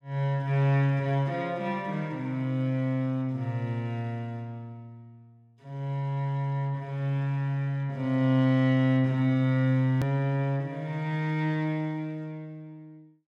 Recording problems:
edit click; at 10 s

